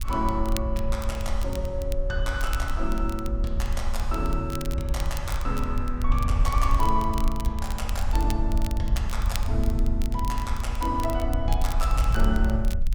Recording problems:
wind on the microphone; below 60 Hz, SNR -1 dB
crackling; vinyl, SNR 13 dB

